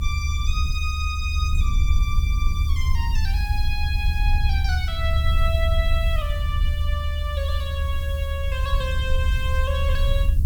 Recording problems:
background hiss; slope +1 dB per octave, SNR 18 dB
low-frequency rumble; below 76 Hz, SNR -6 dB

